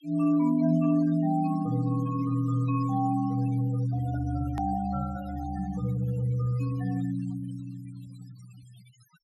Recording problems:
denoising artefacts; signal-to-artefact ratio 21 dB
click at an edit; at 4.5 s

